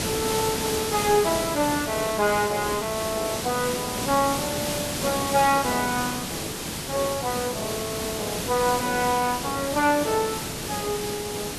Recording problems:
hiss; slope -3 dB per octave, SNR 3 dB

